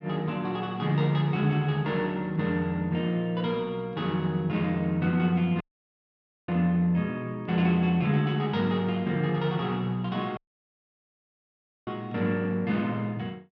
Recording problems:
audio cutting out; at 5.5 s for 1 s and at 10 s for 1.5 s

